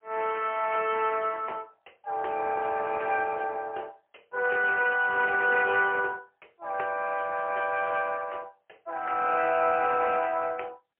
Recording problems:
telephone audio; 340 Hz to 3.1 kHz, AMR-NB, then MP3

